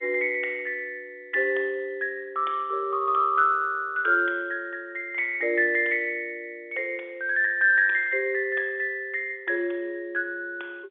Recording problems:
telephone audio; 300 Hz to 3.6 kHz, G.711

